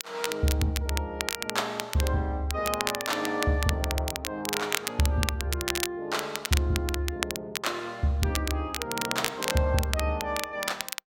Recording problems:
crackle; vinyl, SNR 3 dB

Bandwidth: 16 kHz